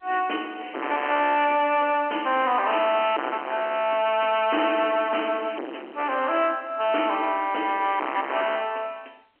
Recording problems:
telephone audio; 240 Hz to 3.2 kHz, G.711
distortion; hard clipping, signal-to-distortion ratio 5 dB

